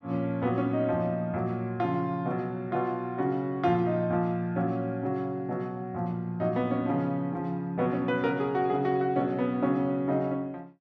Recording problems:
none

